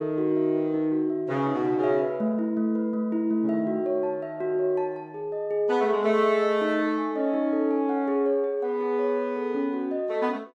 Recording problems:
none

